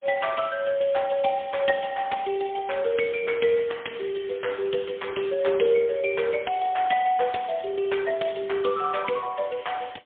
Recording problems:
phone line; 220 Hz to 3.4 kHz, AMR-NB, then MP3

